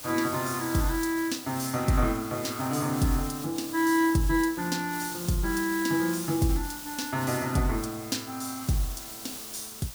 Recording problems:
background hiss; SNR 10 dB

